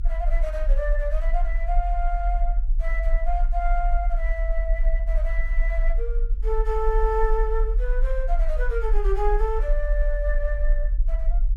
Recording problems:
rumble; below 42 Hz, strongest tone 26 Hz, SNR -4 dB

